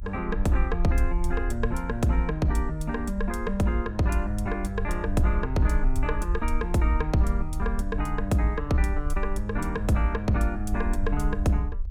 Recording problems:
low-frequency rumble; below 54 Hz, SNR 5 dB

